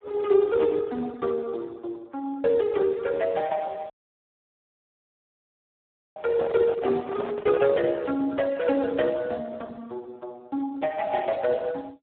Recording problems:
phone line; 240 Hz to 2.3 kHz, Speex
audio cutting out; at 4 s for 2.5 s
handling noise; from 6 to 7.5 s; peak -4 dB vs average level

